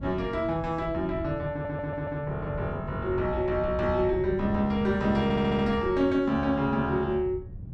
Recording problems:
wind noise; below 150 Hz, SNR 12 dB
stutter; at 1.5 s and at 5 s

